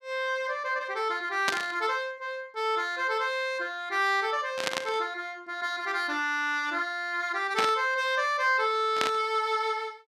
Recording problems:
burst of static; 4 times, first at 1.5 s; peak +4 dB vs average level

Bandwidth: 14.5 kHz